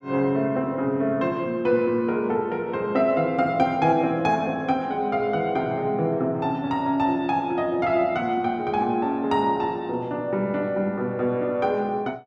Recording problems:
none

